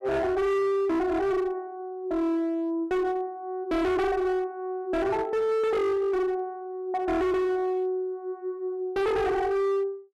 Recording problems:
distorted audio; hard clipping, signal-to-distortion ratio 7 dB

